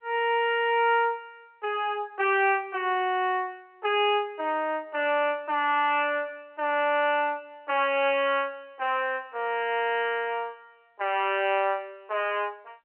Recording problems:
telephone audio; 300 Hz to 3.2 kHz, G.711

